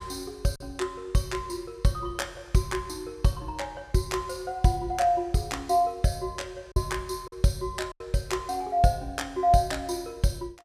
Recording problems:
lost packets; 1.9% of the sound replaced, filled with silence

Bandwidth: 15.5 kHz